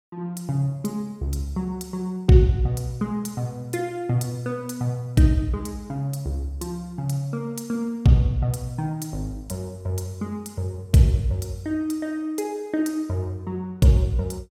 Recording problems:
none

